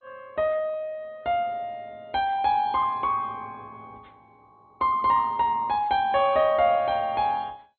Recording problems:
codec artefacts; MP2, log-spectral distance 2 dB, nothing above 4 kHz

